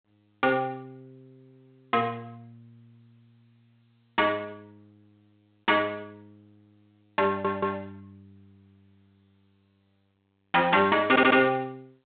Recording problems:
phone line; 320 Hz to 3.7 kHz, G.726
audio stuttering; at 7.5 s and at 11 s

